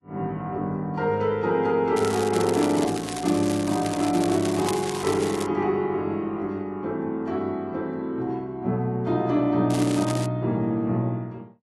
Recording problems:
lossy codec; AAC, log-spectral distance 3 dB
crackling; from 2 to 5.5 s and at 9.5 s; loose cable, SNR 11 dB

